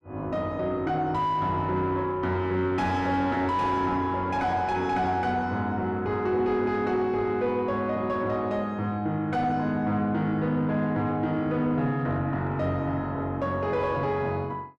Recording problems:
distorted audio; soft clipping, signal-to-distortion ratio 10 dB

